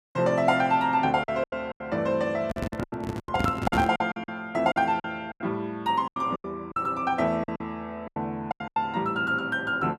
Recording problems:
packet loss; 13% of the sound replaced, filled with silence
microphone handling noise; from 2.5 to 4 s; peak +4 dB vs average level

